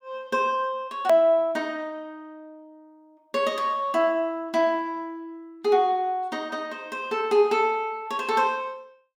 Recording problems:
edit click; at 1 s

